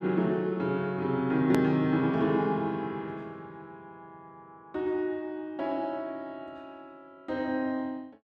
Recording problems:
click at an edit; at 1.5 s

